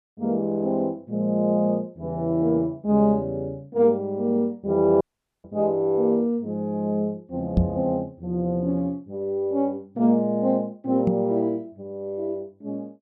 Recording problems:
dropout; at 5 s
microphone thump; at 7.5 s and at 11 s; peak +7 dB vs average level

